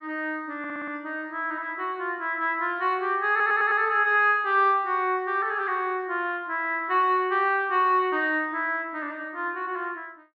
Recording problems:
stutter; at 0.5 s and at 3.5 s

